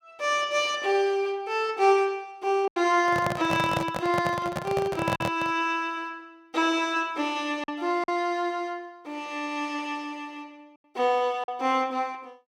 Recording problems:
lost packets; 2% of the sound replaced, filled with silence
microphone handling noise; from 3 to 5.5 s; peak +2 dB vs average level

